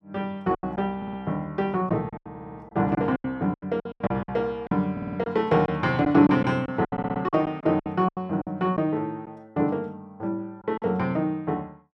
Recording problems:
packet loss; 11% of the sound replaced, filled with silence
stutter; 4 times, first at 1 s

